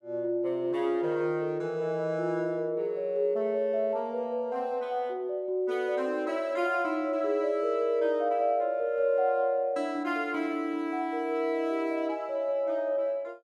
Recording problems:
none

